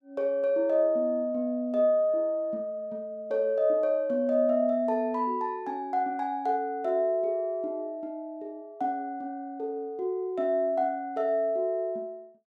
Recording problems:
none

